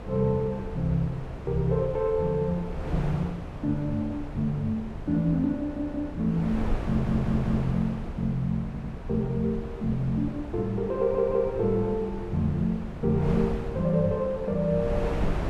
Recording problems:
wind noise; below 360 Hz, SNR 9 dB
stutter; 4 times, first at 5.5 s

